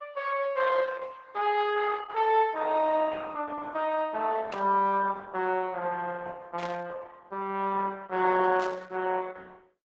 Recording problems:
treble cut off; nothing above 8 kHz
codec artefacts; Opus, log-spectral distance 4 dB
static burst; at 4.5 s, at 6.5 s and at 8.5 s; peak -9 dB vs average level

